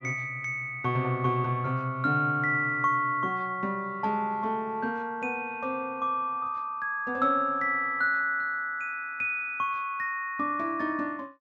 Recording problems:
none

